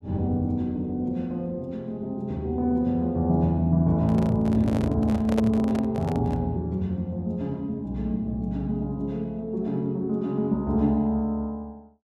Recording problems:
handling noise; from 4 to 6.5 s; peak +1 dB vs average level

